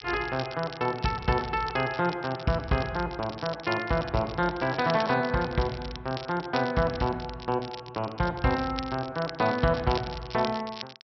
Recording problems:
treble cut off; nothing above 5.6 kHz
crackling; vinyl, SNR 14 dB

